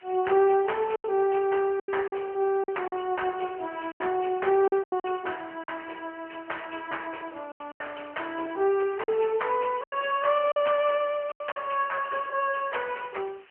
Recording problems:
telephone audio; 340 Hz to 3 kHz, AMR-NB
background hiss; SNR 27 dB
lost packets; 7% of the sound replaced, filled with silence

